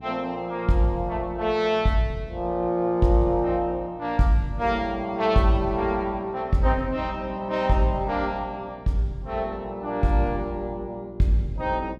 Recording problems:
hum; 60 Hz, harmonics up to 720 Hz, SNR 21 dB

